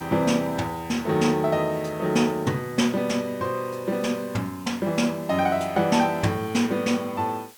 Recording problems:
background hiss; slope +1 dB per octave, SNR 22 dB

